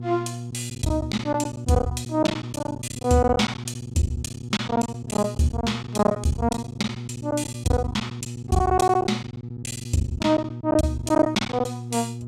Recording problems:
electrical hum; 60 Hz, harmonics up to 480 Hz, SNR 10 dB
lost packets; 16% of the sound replaced, filled with silence

